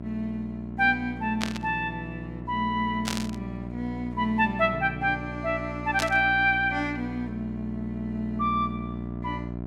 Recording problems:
electrical hum; 60 Hz, harmonics up to 1.1 kHz, SNR 9 dB
static burst; at 1.5 s, at 3 s and at 6 s; peak +2 dB vs average level

